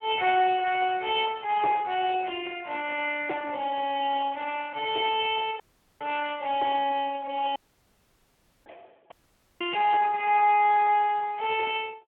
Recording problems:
telephone audio; 320 Hz to 3.3 kHz, Speex
audio cutting out; at 5.5 s, at 7.5 s for 1 s and at 9 s

